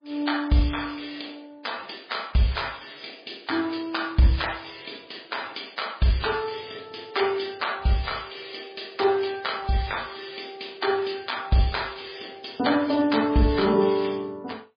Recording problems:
lossy compression; MP3, log-spectral distance 9 dB, nothing above 4.8 kHz

